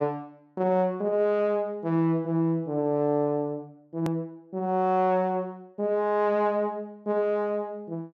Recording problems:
hard cut with a click; at 4 s

